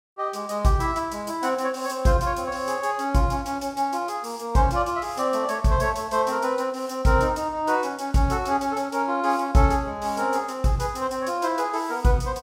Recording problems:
none

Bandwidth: 16 kHz